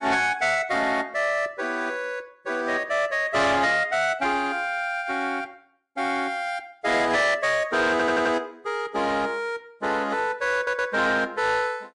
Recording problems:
lossy codec; MP3, log-spectral distance 2 dB, nothing above 10.1 kHz
distortion; soft clipping, signal-to-distortion ratio 11 dB
audio stuttering; at 8 s and at 11 s

